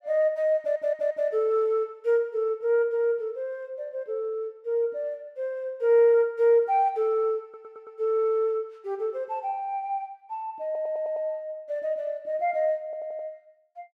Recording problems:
audio stuttering; 4 times, first at 0.5 s

